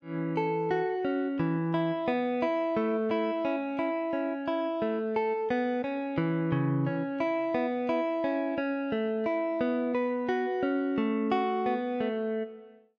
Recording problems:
none

